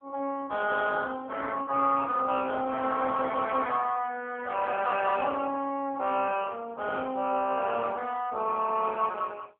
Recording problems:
telephone audio; 260 Hz to 3.4 kHz, AMR-NB

